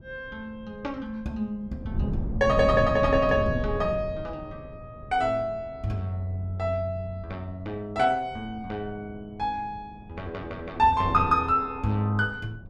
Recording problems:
wind noise; below 170 Hz, SNR 9 dB

